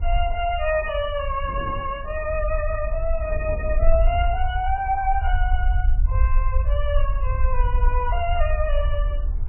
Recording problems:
lossy codec; MP3, log-spectral distance 2 dB, nothing above 2.6 kHz
low-frequency rumble; below 58 Hz, SNR -1 dB
wind noise; below 180 Hz, SNR 16 dB

